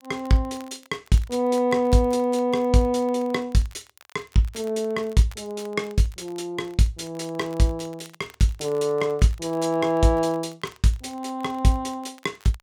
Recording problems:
crackling; vinyl, SNR 27 dB

